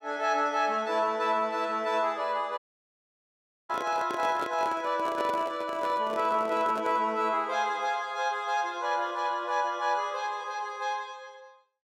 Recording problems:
dropout; at 2.5 s for 1 s
handling noise; from 3.5 to 7 s; peak -4 dB vs average level

